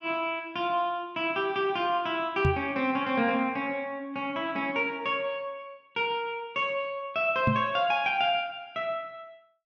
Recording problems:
microphone thump; at 2.5 s and at 7.5 s; peak +5 dB vs average level

